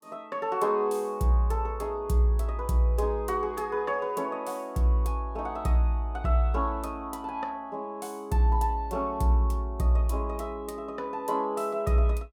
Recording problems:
none

